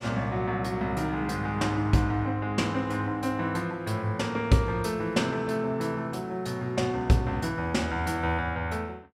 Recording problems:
none

